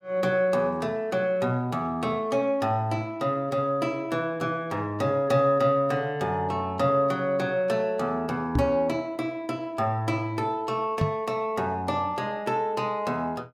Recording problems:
microphone thump; at 8.5 s and at 11 s; peak +5 dB vs average level

